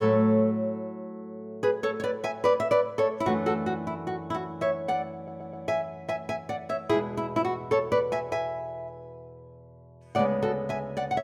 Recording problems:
stutter; at 5 s

